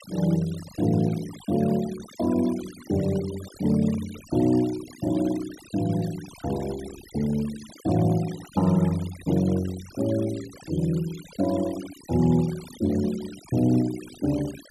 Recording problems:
noise reduction artefacts; signal-to-artefact ratio 18 dB

